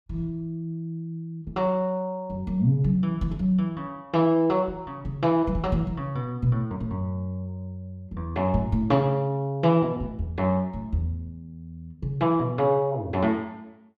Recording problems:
none

